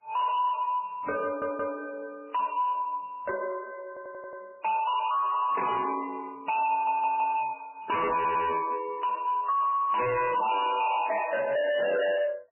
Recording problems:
lossy codec; MP3, then MP3, log-spectral distance 4 dB, nothing above 2.9 kHz
distorted audio; hard clipping, signal-to-distortion ratio 5 dB
audio stuttering; 4 times, first at 1 s

